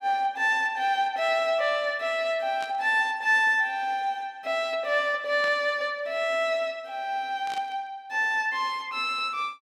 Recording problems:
static burst; at 2.5 s, at 5.5 s and at 7.5 s; peak -10 dB vs average level

